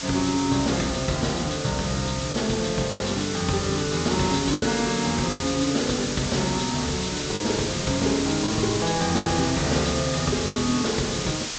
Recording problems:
treble cut off; nothing above 8 kHz
hiss; slope +2 dB per octave, SNR 5 dB
wind on the microphone; below 540 Hz, SNR 22 dB
lost packets; 4% of the sound replaced, filled with the last packet

